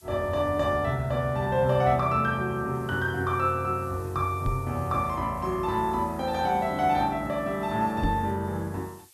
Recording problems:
hiss; SNR 27 dB
microphone thump; at 4.5 s and at 8 s; peak +2 dB vs average level

